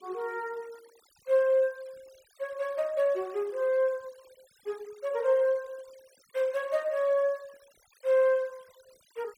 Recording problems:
denoising artefacts; signal-to-artefact ratio 28 dB

